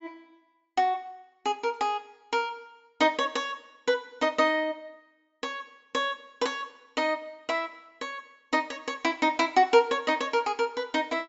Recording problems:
treble missing; nothing above 8 kHz

